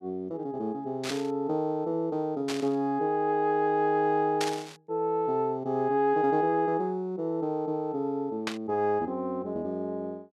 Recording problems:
static burst; 4 times, first at 1 s; peak +1 dB vs average level

